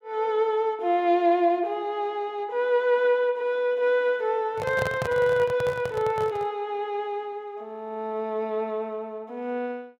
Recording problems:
microphone handling noise; from 4.5 to 6.5 s; peak -1 dB vs average level

